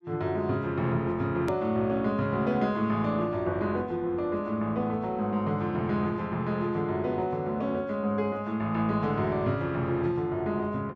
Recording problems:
hard cut with a click; at 1.5 s

